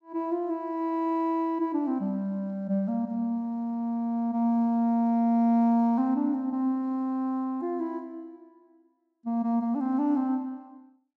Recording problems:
none

